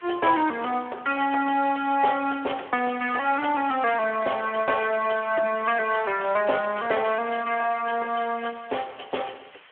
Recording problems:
telephone audio; 320 Hz to 3.3 kHz, Speex
background hiss; SNR 25 dB

